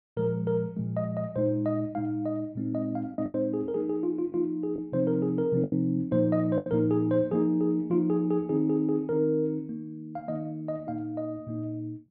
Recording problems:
packet loss; 3% of the sound replaced, filled with the last packet

